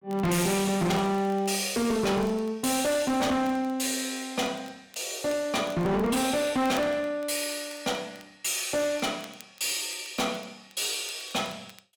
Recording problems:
distortion; hard clipping, uneven, signal-to-distortion ratio 7 dB
crackle; vinyl, SNR 25 dB

